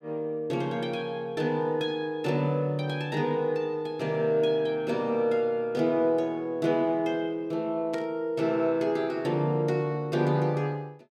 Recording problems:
burst of static; at 8 s; peak -10 dB vs average level

